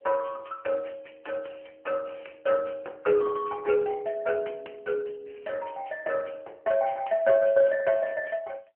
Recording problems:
phone line; 320 Hz to 3.1 kHz, AMR-NB

